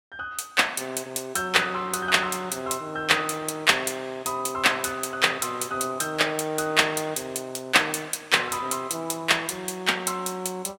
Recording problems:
none

